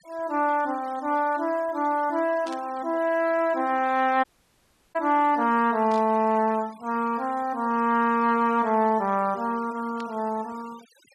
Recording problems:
noise reduction artefacts; signal-to-artefact ratio 23 dB
static burst; at 2.5 s, at 6 s and at 10 s; peak -14 dB vs average level
dropout; at 4 s for 0.5 s

